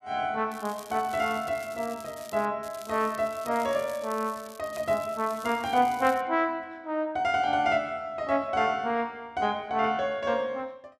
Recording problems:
crackle; from 0.5 to 2.5 s and from 2.5 to 6 s; loose cable, SNR 19 dB

